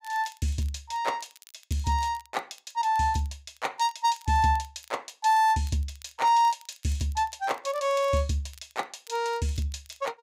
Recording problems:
crackle; vinyl, SNR 26 dB

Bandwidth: 15.5 kHz